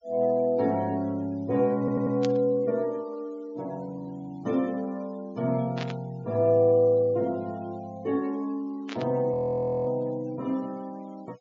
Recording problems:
low-pass filter; nothing above 7.3 kHz
denoising artefacts; signal-to-artefact ratio 26 dB
stutter; at 2 s
burst of static; at 2 s, at 6 s and at 9 s; peak -5 dB vs average level
frozen audio; at 9.5 s for 0.5 s

